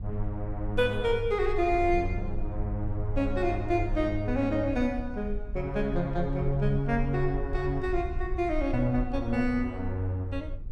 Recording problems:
rumble; below 54 Hz, strongest tone 20 Hz, SNR 8 dB

